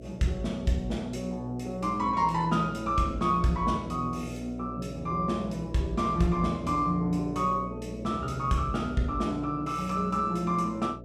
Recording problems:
electrical hum; 60 Hz, harmonics up to 660 Hz, SNR 12 dB

